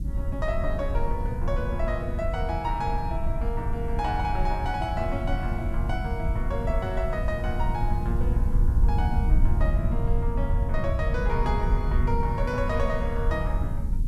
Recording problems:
background hiss; slope +3 dB per octave, SNR 29 dB
rumble; below 82 Hz, SNR -3 dB

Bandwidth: 13 kHz